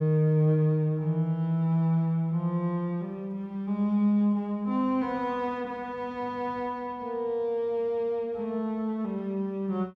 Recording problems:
none

